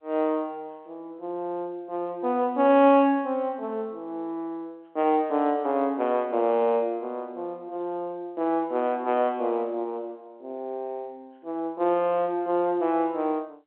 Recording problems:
phone line; 220 Hz to 3.6 kHz, G.711

